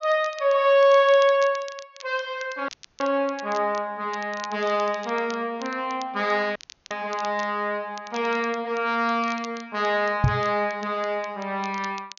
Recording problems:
treble cut off; nothing above 6.7 kHz
crackle; vinyl, SNR 21 dB
dropout; at 2.5 s and at 6.5 s
microphone thump; at 10 s; peak +7 dB vs average level

